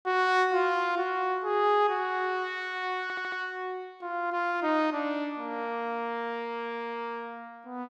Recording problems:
audio stuttering; at 3 s

